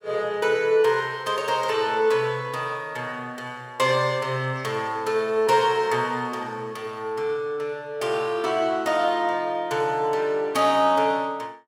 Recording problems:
none

